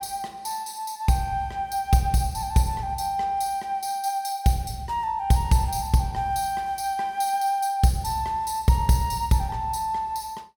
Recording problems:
none

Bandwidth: 18 kHz